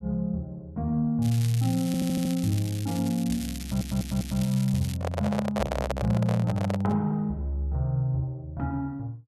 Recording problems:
crackle; from 1 to 5 s; loose cable, SNR 13 dB
audio stuttering; at 2 s and at 3.5 s
microphone handling noise; from 5 to 7 s; peak +3 dB vs average level

